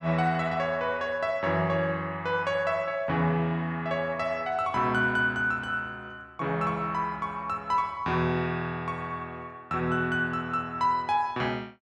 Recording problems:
none

